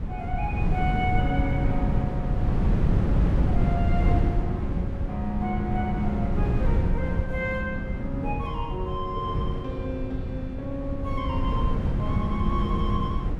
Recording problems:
wind on the microphone; below 160 Hz, SNR -4 dB

